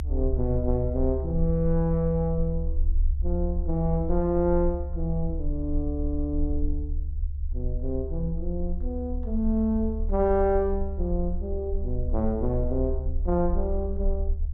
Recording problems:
rumble; below 72 Hz, SNR 3 dB

